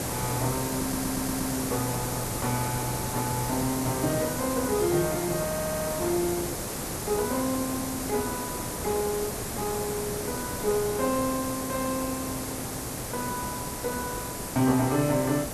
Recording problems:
hum; 60 Hz, harmonics up to 960 Hz, SNR 19 dB
hiss; SNR 2 dB
wind noise; below 670 Hz, SNR 20 dB
audio stuttering; at 1 s and at 5.5 s

